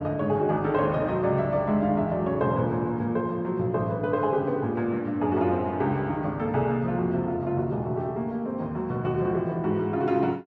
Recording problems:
none

